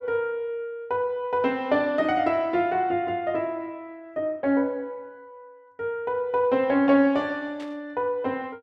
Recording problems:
burst of static; at 7.5 s; peak -16 dB vs average level

